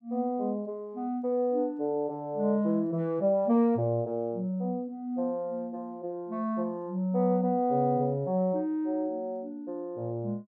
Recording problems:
none

